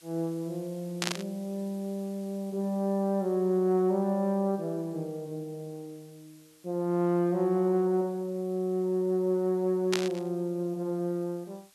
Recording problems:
background hiss; slope +1 dB per octave, SNR 27 dB
burst of static; at 1 s and at 10 s; peak +4 dB vs average level

